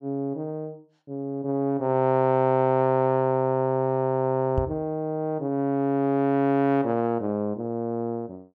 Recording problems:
microphone thump; at 4.5 s; peak +1 dB vs average level

